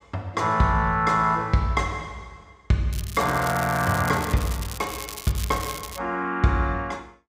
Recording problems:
crackling; from 3 to 6 s; loose cable, SNR 12 dB

